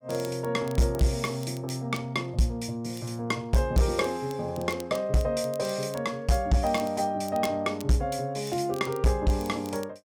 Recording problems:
distorted audio; hard clipping, signal-to-distortion ratio 12 dB
crackle; vinyl, SNR 21 dB

